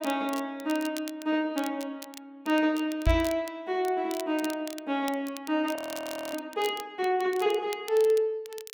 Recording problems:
crackle; vinyl, SNR 16 dB
knock on the microphone; at 3 s; peak +7 dB vs average level
frozen audio; at 6 s for 0.5 s

